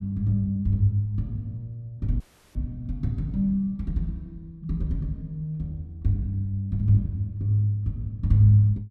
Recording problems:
audio cutting out; at 2 s

